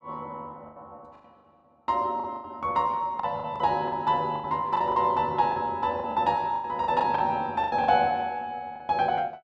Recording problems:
lost packets; 12% of the sound replaced, filled with the last packet

